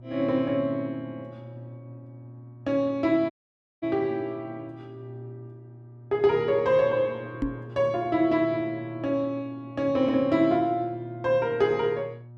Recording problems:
electrical hum; 60 Hz, harmonics up to 720 Hz, SNR 18 dB
audio cutting out; at 3.5 s for 0.5 s
knock on the microphone; at 7.5 s; peak +2 dB vs average level

